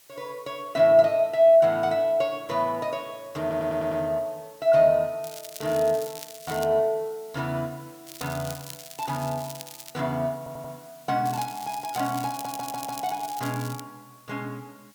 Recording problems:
hiss; slope +1 dB per octave, SNR 27 dB
audio stuttering; at 3.5 s, at 10 s and at 12 s
crackling; from 5 to 6.5 s, from 8 to 10 s and from 11 to 14 s; loose cable, SNR 15 dB

